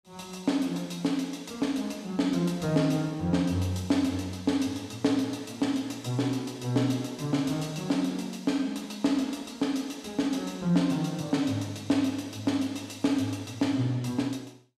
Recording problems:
none

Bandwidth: 14.5 kHz